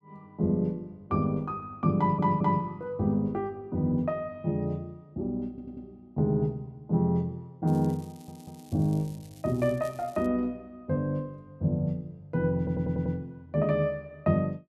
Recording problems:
audio stuttering; 4 times, first at 2 s
crackling; from 7.5 to 10 s; loose cable, SNR 26 dB

